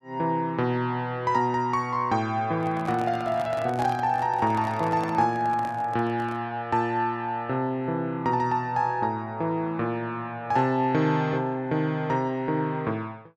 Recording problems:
microphone handling noise; from 2.5 to 6.5 s; peak -4 dB vs average level

